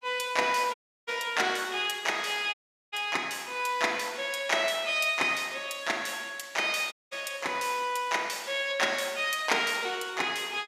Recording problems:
audio cutting out; at 0.5 s, at 2.5 s and at 7 s

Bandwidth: 15.5 kHz